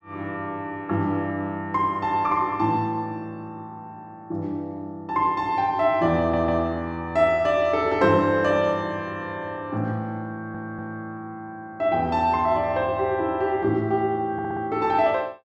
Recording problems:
audio stuttering; at 6 s, at 10 s and at 14 s

